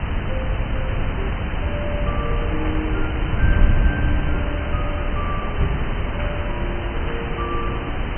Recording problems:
treble cut off; nothing above 3.1 kHz
hiss; SNR -1 dB
wind noise; below 92 Hz, SNR -5 dB

